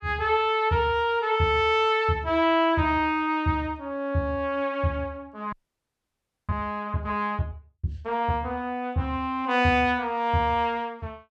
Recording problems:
frozen audio; at 5.5 s for 1 s

